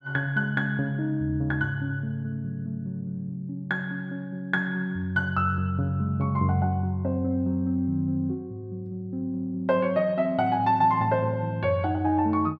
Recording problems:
none

